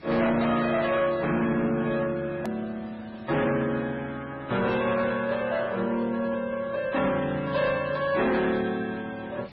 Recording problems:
lossy compression; MP3, then Vorbis, log-spectral distance 3 dB
distorted audio; hard clipping, uneven, signal-to-distortion ratio 12 dB
hiss; SNR 23 dB
click at an edit; at 2.5 s

